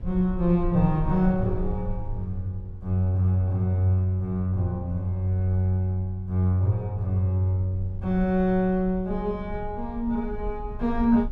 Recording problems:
rumble; below 60 Hz, SNR 13 dB

